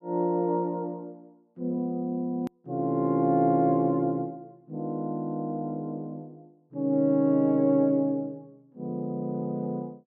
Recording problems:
hard cut with a click; at 2.5 s

